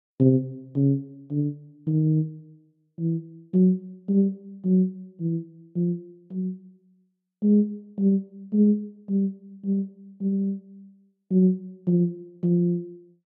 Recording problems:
none

